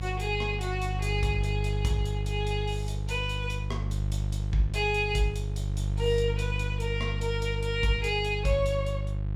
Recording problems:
hum; 50 Hz, harmonics up to 350 Hz, SNR 1 dB

